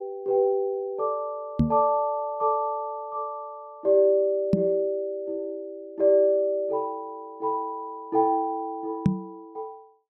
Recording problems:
knock on the microphone; at 1.5 s, at 4.5 s and at 9 s; peak +8 dB vs average level

